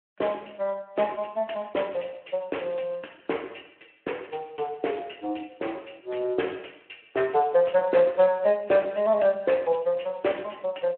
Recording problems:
telephone audio; 280 Hz to 3.2 kHz, Speex

